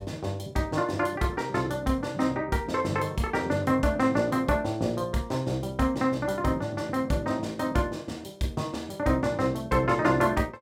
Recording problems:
none

